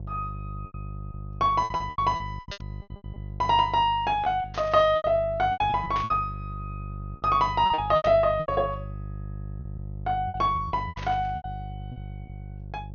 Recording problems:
treble cut off; nothing above 6.6 kHz
electrical hum; 50 Hz, harmonics up to 550 Hz, SNR 13 dB
lost packets; 14% of the sound replaced, filled with repeated pitch periods
burst of static; 5 times, first at 2.5 s; peak -7 dB vs average level

